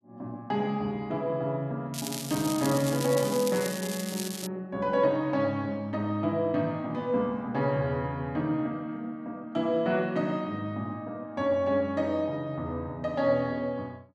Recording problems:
crackle; from 2 to 4.5 s; loose cable, SNR 7 dB

